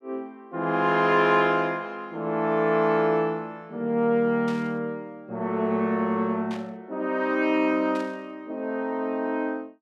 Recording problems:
burst of static; at 4.5 s, at 6.5 s and at 8 s; peak -12 dB vs average level

